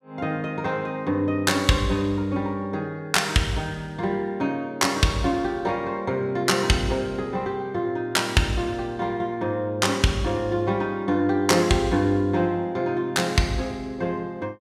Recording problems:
none

